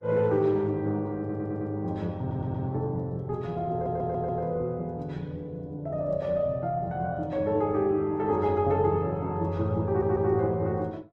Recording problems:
lossy codec; Opus, log-spectral distance 2 dB
stutter; 4 times, first at 1 s

